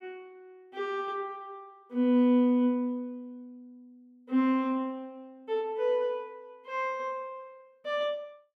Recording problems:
none

